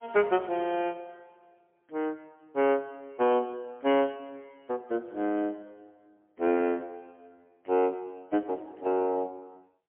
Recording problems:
phone line; 220 Hz to 3.2 kHz, AMR-NB, then MP3

